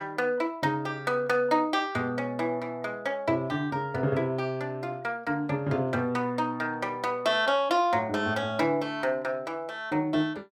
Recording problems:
none

